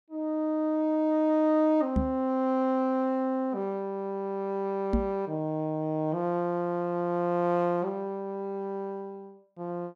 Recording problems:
microphone bump; at 2 s and at 5 s; peak +5 dB vs average level

